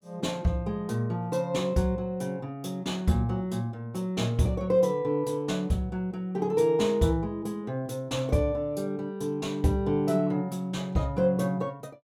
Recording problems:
none

